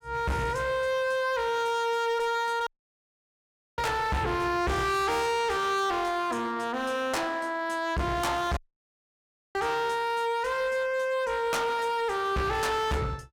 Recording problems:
distorted audio; hard clipping, uneven, signal-to-distortion ratio 6 dB
dropout; at 2.5 s for 1 s and at 8.5 s for 1 s

